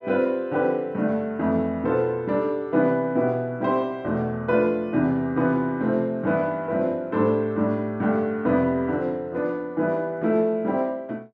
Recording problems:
none

